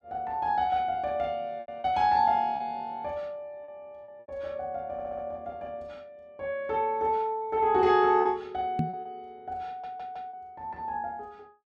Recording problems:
packet loss; 5% of the sound replaced, filled with repeated pitch periods
audio stuttering; at 5 s and at 9.5 s
microphone thump; at 9 s; peak +4 dB vs average level

